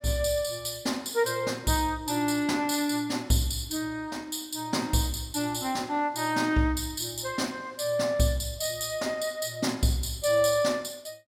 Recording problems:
none

